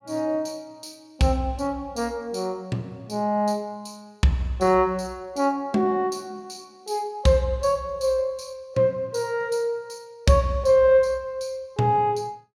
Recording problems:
none

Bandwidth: 16 kHz